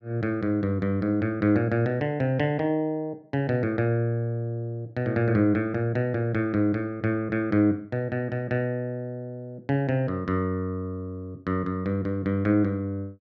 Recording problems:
none

